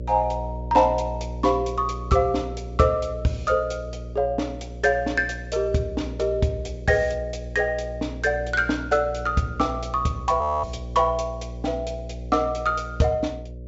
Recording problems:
treble cut off; nothing above 8 kHz
hum; 60 Hz, harmonics up to 600 Hz, SNR 11 dB
audio freezing; at 10 s

